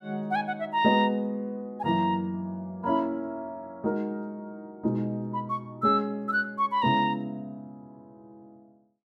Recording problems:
none

